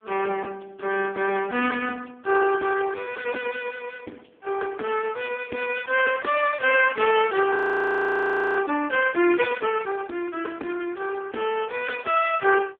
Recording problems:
telephone audio; 220 Hz to 3.1 kHz, AMR-NB
audio freezing; at 7.5 s for 1 s

